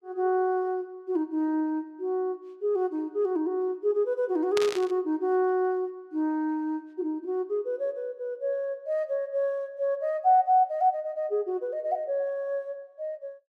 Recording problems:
burst of static; at 4.5 s; peak 0 dB vs average level

